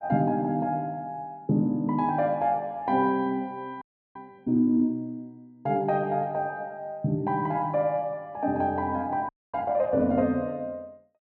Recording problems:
treble cut off; nothing above 8 kHz
frozen audio; at 4 s and at 9.5 s

